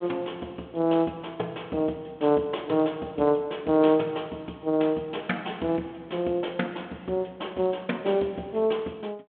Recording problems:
telephone audio; 190 Hz to 3.5 kHz, G.726

